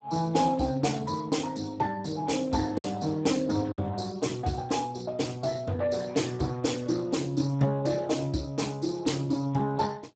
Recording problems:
lossy codec; Speex, log-spectral distance 5 dB, nothing above 7.8 kHz
lost packets; 1.2% of the sound replaced, filled with silence

